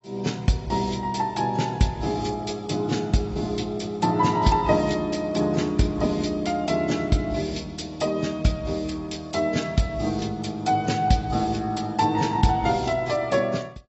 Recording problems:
codec artefacts; AAC, log-spectral distance 3 dB, nothing above 7.8 kHz

